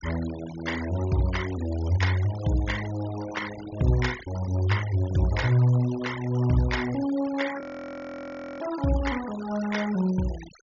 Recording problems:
treble missing; nothing above 6.9 kHz
denoising artefacts; signal-to-artefact ratio 14 dB
audio freezing; at 7.5 s for 1 s

